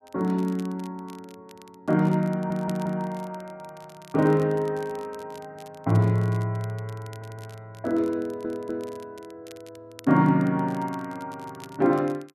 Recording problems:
crackling; vinyl, SNR 26 dB
stutter; at 2.5 s, at 7 s and at 8 s

